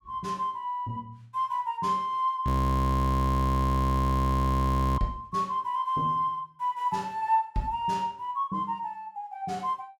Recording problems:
frozen audio; at 2.5 s for 2.5 s

